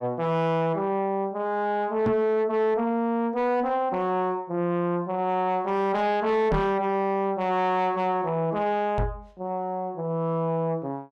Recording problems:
distorted audio; soft clipping, signal-to-distortion ratio 12 dB
microphone bump; at 2 s, at 6.5 s and at 9 s; peak +2 dB vs average level

